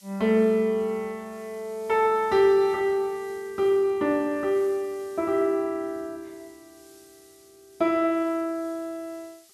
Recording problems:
background hiss; slope +4 dB per octave, SNR 28 dB

